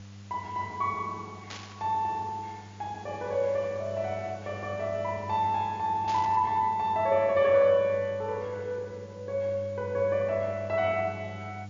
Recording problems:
treble missing; nothing above 7.2 kHz
hum; 50 Hz, harmonics up to 500 Hz, SNR 16 dB
background hiss; slope -1 dB per octave, SNR 27 dB
burst of static; at 1.5 s and at 6 s; peak -8 dB vs average level

